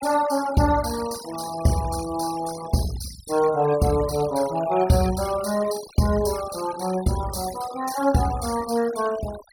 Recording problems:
denoising artefacts; signal-to-artefact ratio 15 dB

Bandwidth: 17 kHz